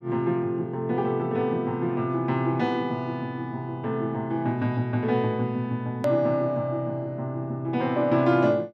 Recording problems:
hard cut with a click; at 6 s

